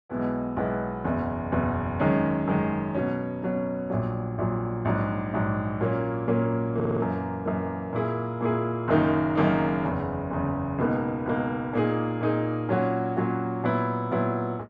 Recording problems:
audio stuttering; at 6.5 s

